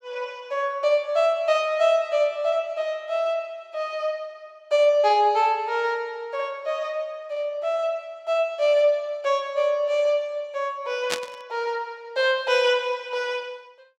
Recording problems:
burst of static; at 11 s; peak +3 dB vs average level

